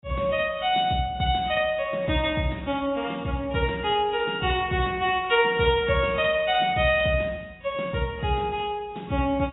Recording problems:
lossy codec; AAC, log-spectral distance 4 dB, nothing above 3.1 kHz

